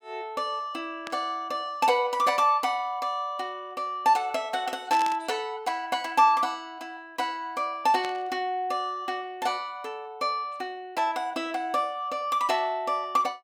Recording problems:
burst of static; at 1 s, at 5 s and at 8 s; peak -5 dB vs average level

